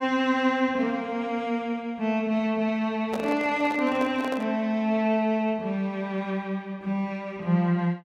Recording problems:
microphone handling noise; from 3 to 4.5 s; peak -3 dB vs average level

